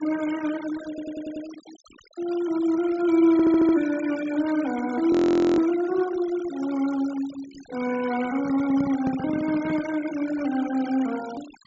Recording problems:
treble missing; nothing above 8 kHz
denoising artefacts; signal-to-artefact ratio 17 dB
stutter; at 1 s and at 3.5 s
audio freezing; at 5 s
microphone handling noise; from 8.5 to 10 s; peak -2 dB vs average level

